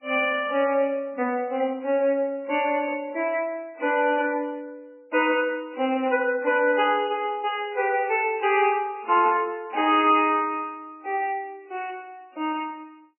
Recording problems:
lossy codec; MP3, log-spectral distance 3 dB, nothing above 2.5 kHz

